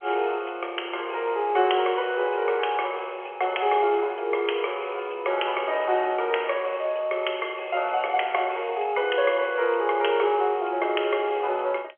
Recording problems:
telephone audio; 320 Hz to 3.3 kHz, G.711

